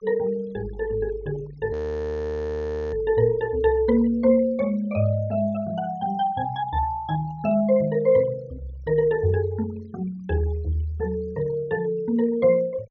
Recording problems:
denoising artefacts; signal-to-artefact ratio 24 dB
audio freezing; at 1.5 s for 1 s

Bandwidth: 6.5 kHz